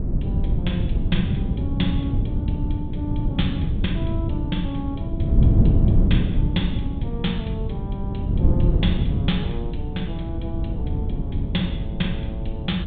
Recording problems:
low-pass filter; nothing above 4 kHz
wind noise; below 150 Hz, SNR -6 dB

